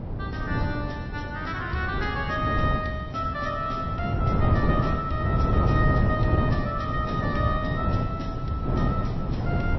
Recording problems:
lossy codec; MP3, log-spectral distance 2 dB, nothing above 5.7 kHz
wind noise; below 230 Hz, SNR -3 dB

